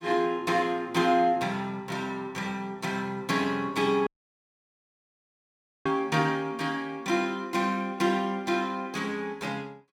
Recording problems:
audio cutting out; at 4 s for 2 s

